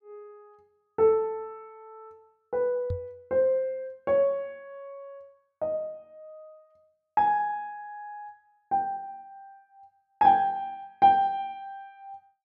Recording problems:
microphone bump; at 3 s; peak -3 dB vs average level

